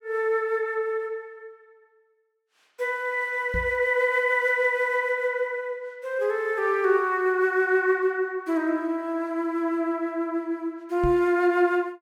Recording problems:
knock on the microphone; at 3.5 s and at 11 s; peak -2 dB vs average level

